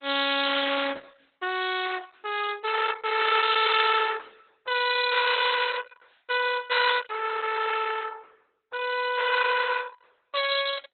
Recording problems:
codec artefacts; Opus, log-spectral distance 9 dB, nothing above 4.1 kHz

